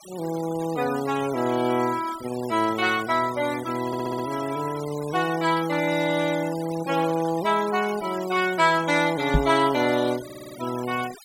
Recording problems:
noise reduction artefacts; signal-to-artefact ratio 16 dB
stutter; at 4 s and at 10 s
knock on the microphone; at 9.5 s; peak +6 dB vs average level

